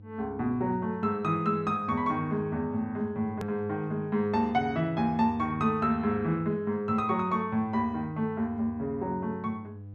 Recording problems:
electrical hum; 50 Hz, harmonics up to 500 Hz, SNR 18 dB
click at an edit; at 3.5 s

